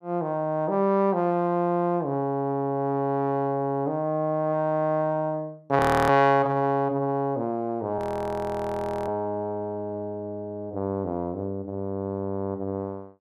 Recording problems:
frozen audio; at 6 s and at 8 s for 1 s

